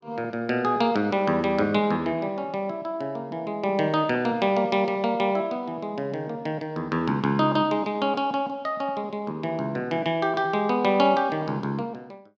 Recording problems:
none

